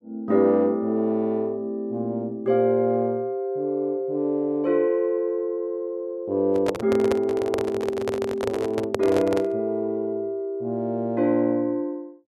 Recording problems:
handling noise; from 6.5 to 9.5 s; peak +2 dB vs average level

